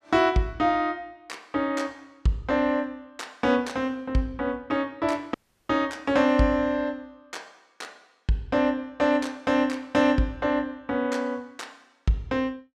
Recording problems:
dropout; at 5.5 s

